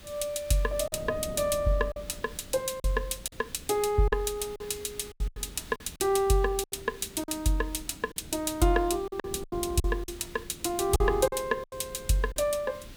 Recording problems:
hiss; SNR 22 dB
wind noise; below 270 Hz, SNR 18 dB
packet loss; 9% of the sound replaced, filled with silence

